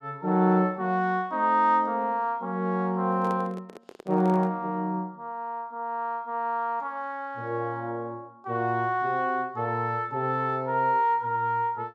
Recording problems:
handling noise; from 3 to 4.5 s; peak -6 dB vs average level

